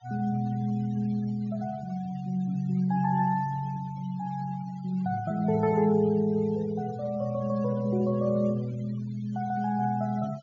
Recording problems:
treble cut off; nothing above 7 kHz
noise reduction artefacts; signal-to-artefact ratio 25 dB

